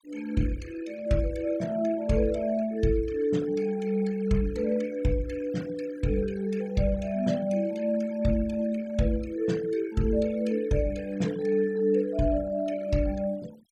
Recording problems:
denoising artefacts; signal-to-artefact ratio 20 dB

